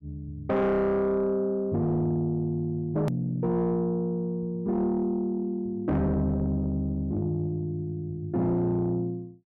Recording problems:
distortion; soft clipping, signal-to-distortion ratio 11 dB
edit click; at 3 s

